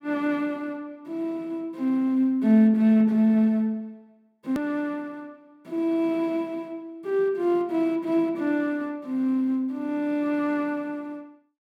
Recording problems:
edit click; at 4.5 s

